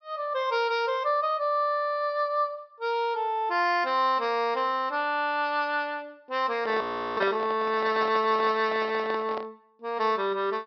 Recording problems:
low-pass filter; nothing above 5.5 kHz
microphone handling noise; from 6.5 to 9.5 s; peak -1 dB vs average level
audio freezing; at 7 s

